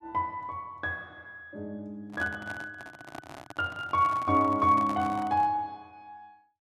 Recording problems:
handling noise; from 2 to 5.5 s; peak -7 dB vs average level

